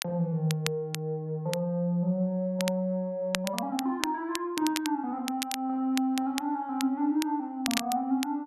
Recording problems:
crackle; vinyl, SNR 7 dB

